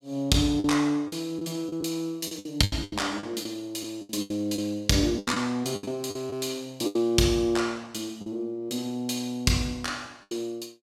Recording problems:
packet loss; 10% of the sound replaced, filled with the last packet

